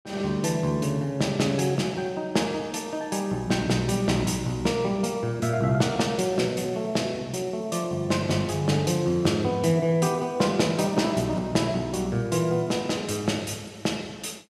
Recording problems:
none

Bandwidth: 14.5 kHz